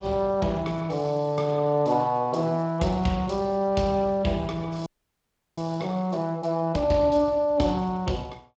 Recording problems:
codec artefacts; Speex, log-spectral distance 3 dB
audio freezing; at 5 s for 0.5 s

